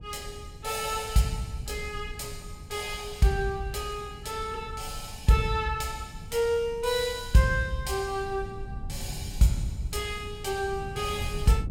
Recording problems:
low-frequency rumble; below 120 Hz, SNR 13 dB

